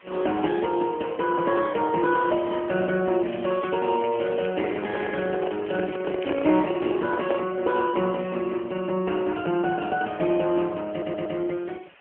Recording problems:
phone line; 240 Hz to 3.1 kHz, AMR-NB
background hiss; SNR 26 dB
crackling; from 3.5 to 6.5 s; loose cable, SNR 19 dB
handling noise; from 4.5 to 7.5 s; peak +1 dB vs average level
stutter; at 11 s

